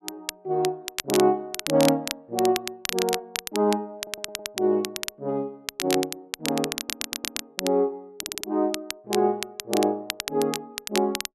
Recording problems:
crackle; vinyl, SNR 6 dB
audio stuttering; at 4 s, at 7 s and at 8 s

